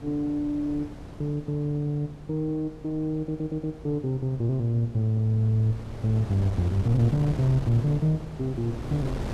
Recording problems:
wind on the microphone; below 360 Hz, SNR 13 dB
stutter; at 3 s

